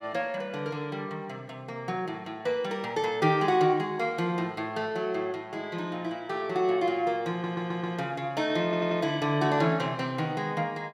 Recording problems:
audio stuttering; at 7.5 s and at 8.5 s

